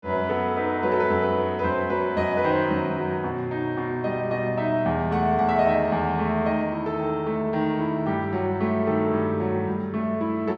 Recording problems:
none

